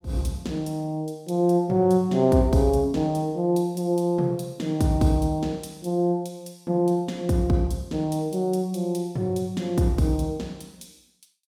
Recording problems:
none

